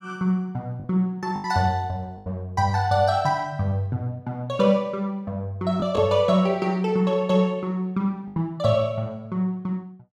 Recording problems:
lost packets; 3% of the sound replaced, filled with the last packet

